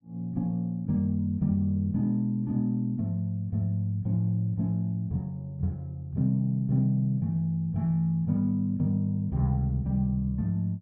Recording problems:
none

